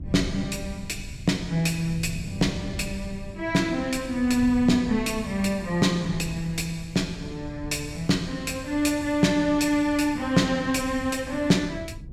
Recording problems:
wind on the microphone; below 140 Hz, SNR 14 dB

